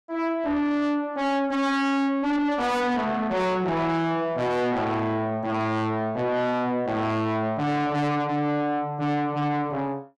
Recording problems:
distortion; soft clipping, signal-to-distortion ratio 6 dB

